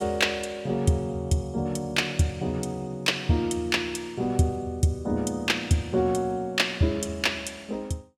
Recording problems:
none

